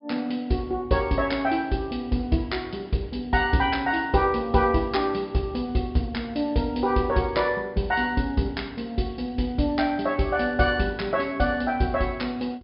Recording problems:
low-pass filter; nothing above 5.5 kHz

